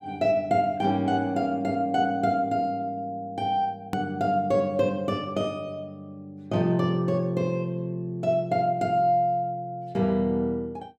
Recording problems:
click at an edit; at 4 s

